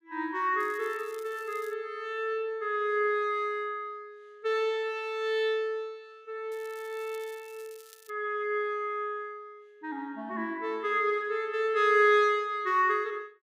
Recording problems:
crackle; from 0.5 to 2 s and from 6.5 to 8 s; loose cable, SNR 25 dB

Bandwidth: 15.5 kHz